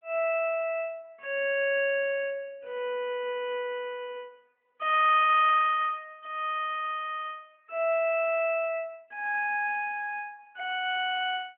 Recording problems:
phone line; 260 Hz to 3.3 kHz, AMR-NB

